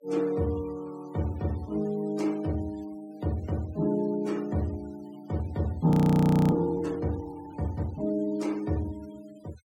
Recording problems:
noise reduction artefacts; signal-to-artefact ratio 25 dB
audio freezing; at 6 s for 0.5 s

